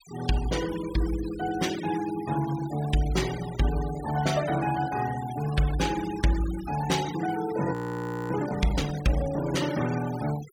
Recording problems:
noise reduction artefacts; signal-to-artefact ratio 13 dB
audio freezing; at 7.5 s for 0.5 s

